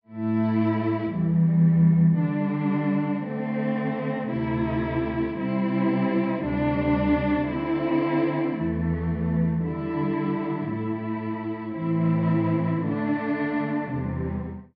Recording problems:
low-pass filter; nothing above 5.5 kHz

